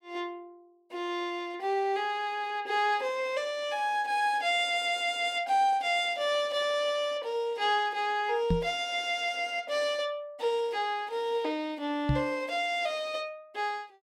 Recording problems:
microphone thump; at 8.5 s and at 12 s; peak +5 dB vs average level

